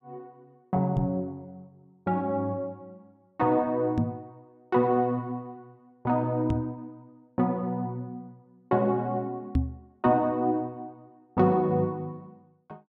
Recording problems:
knock on the microphone; 4 times, first at 1 s; peak +6 dB vs average level

